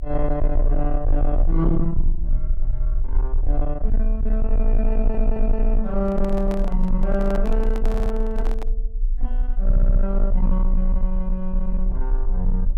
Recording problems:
distortion; soft clipping, signal-to-distortion ratio 12 dB
low-frequency rumble; below 34 Hz, strongest tone 30 Hz, SNR -2 dB
audio stuttering; at 5 s, at 8 s and at 9.5 s
handling noise; from 6 to 8.5 s; peak -4 dB vs average level

